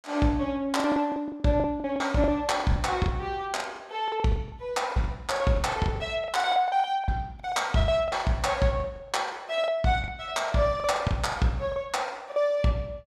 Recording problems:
packet loss; 16% of the sound replaced, filled with the last packet

